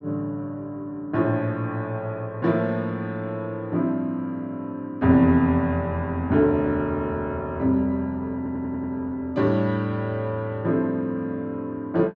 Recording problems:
stutter; at 8.5 s

